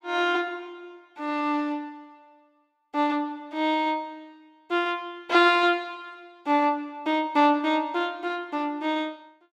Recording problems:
none

